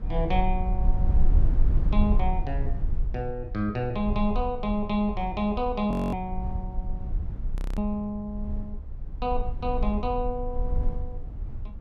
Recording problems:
rumble; below 56 Hz, strongest tone 20 Hz, SNR 1 dB
frozen audio; at 6 s and at 7.5 s

